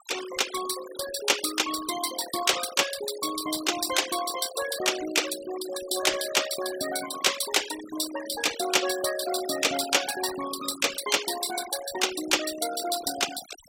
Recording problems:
noise reduction artefacts; signal-to-artefact ratio 10 dB

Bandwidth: 16 kHz